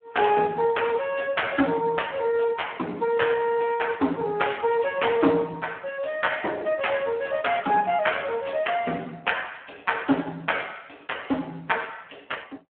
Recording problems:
phone line; 190 Hz to 3.3 kHz, Speex

